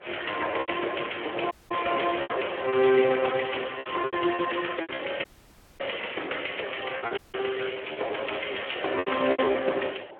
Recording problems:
telephone audio; 300 Hz to 3.3 kHz, Speex
wind noise; below 830 Hz, SNR 17 dB
lost packets; 12% of the sound replaced, filled with repeated pitch periods
dropout; at 1.5 s, at 5 s for 0.5 s and at 7 s

